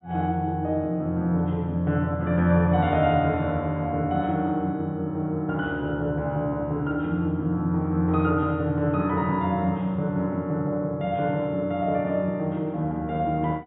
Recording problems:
treble cut off; nothing above 4 kHz

